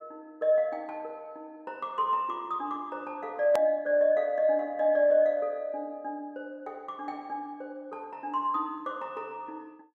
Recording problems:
click at an edit; at 3.5 s

